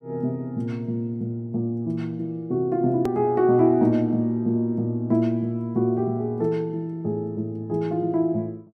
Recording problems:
edit click; at 3 s

